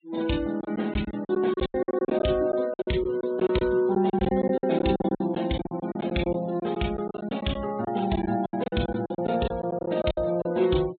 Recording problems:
low-pass filter; nothing above 4 kHz
denoising artefacts; signal-to-artefact ratio 20 dB
packet loss; 16% of the sound replaced, filled with silence

